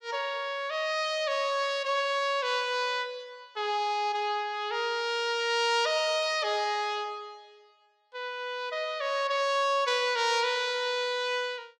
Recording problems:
none

